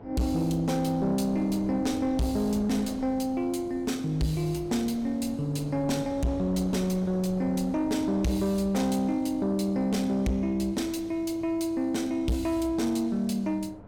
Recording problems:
distorted audio; soft clipping, signal-to-distortion ratio 11 dB
hum; 50 Hz, harmonics up to 1.3 kHz, SNR 24 dB
wind on the microphone; below 570 Hz, SNR 17 dB

